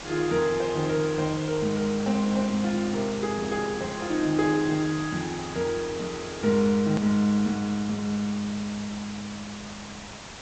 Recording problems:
treble missing; nothing above 8 kHz
background hiss; slope -2 dB per octave, SNR 12 dB
hard cut with a click; at 7 s

